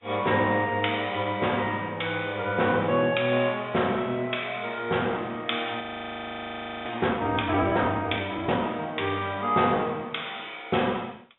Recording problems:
treble missing; nothing above 3.7 kHz
background hiss; SNR 42 dB
audio freezing; at 6 s for 1 s

